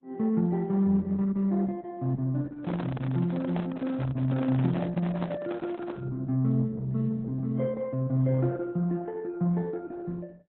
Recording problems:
lossy compression; AAC, then Opus, log-spectral distance 2 dB
handling noise; from 2.5 to 6 s; peak -4 dB vs average level

